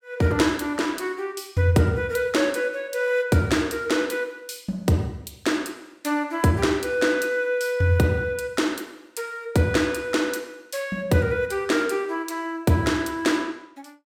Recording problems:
none

